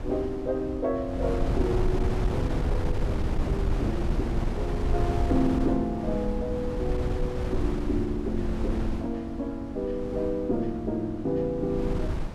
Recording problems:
wind noise; below 140 Hz, SNR 1 dB

